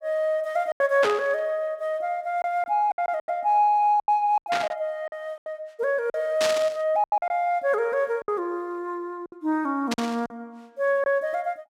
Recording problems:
packet loss; 9% of the sound replaced, filled with silence
static burst; 4 times, first at 1 s; peak +2 dB vs average level

